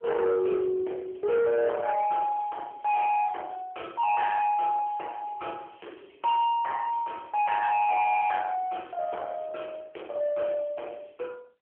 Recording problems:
telephone audio; 860 Hz to 3.1 kHz, AMR-NB
distortion; soft clipping, signal-to-distortion ratio 8 dB

